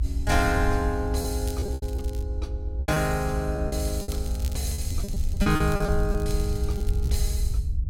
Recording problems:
low-frequency rumble; below 78 Hz, SNR 1 dB
packet loss; 10% of the sound replaced, filled with repeated pitch periods
crackle; at 1.5 s and from 4 to 7.5 s; loose cable, SNR 18 dB

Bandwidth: 16 kHz